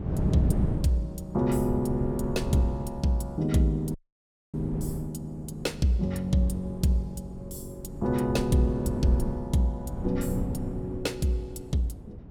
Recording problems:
wind on the microphone; below 210 Hz, SNR 7 dB
audio cutting out; at 4 s for 0.5 s

